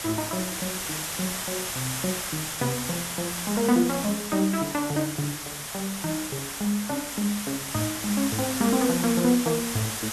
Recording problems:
background hiss; slope 0 dB per octave, SNR 3 dB

